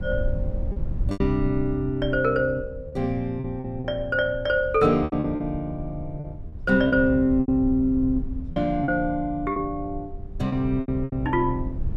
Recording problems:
wind noise; below 86 Hz, SNR 10 dB
lost packets; 8% of the sound replaced, filled with repeated pitch periods

